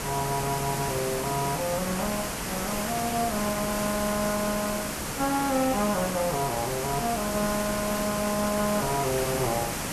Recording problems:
background hiss; slope -4 dB per octave, SNR 2 dB

